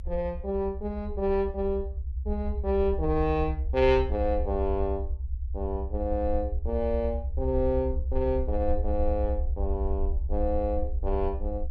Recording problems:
rumble; below 70 Hz, SNR 3 dB

